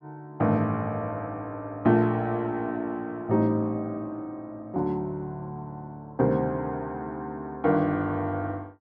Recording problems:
none

